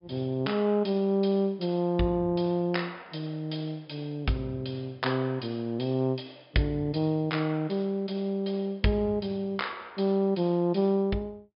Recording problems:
low-pass filter; nothing above 5.5 kHz

